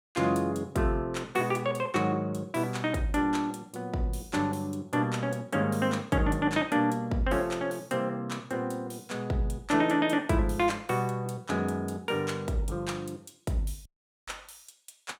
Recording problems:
audio cutting out; at 14 s

